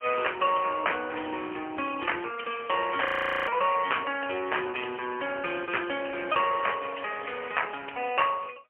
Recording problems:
phone line; 280 Hz to 3.1 kHz, AMR-NB, then MP3
audio freezing; at 3 s

